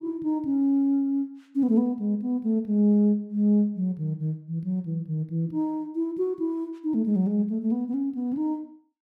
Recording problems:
none

